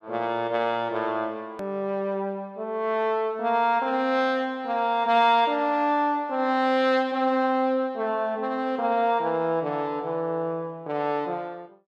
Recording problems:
click at an edit; at 1.5 s

